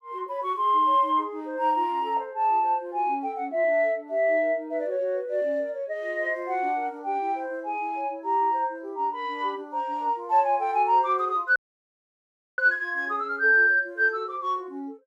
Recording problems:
audio cutting out; at 12 s for 1 s

